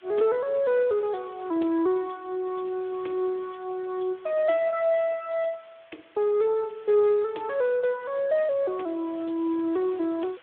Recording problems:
telephone audio; 260 Hz to 2.8 kHz, Speex
background hiss; SNR 27 dB

